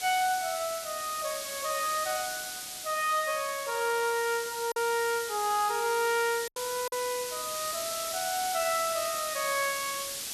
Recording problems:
hiss; SNR 5 dB
lost packets; 1.6% of the sound replaced, filled with silence

